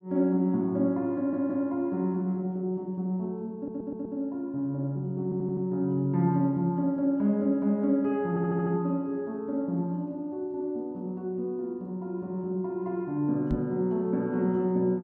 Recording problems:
audio stuttering; 4 times, first at 1 s
microphone bump; at 14 s; peak -1 dB vs average level

